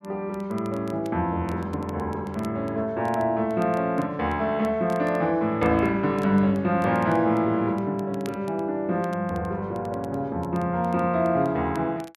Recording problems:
crackling; vinyl, SNR 28 dB

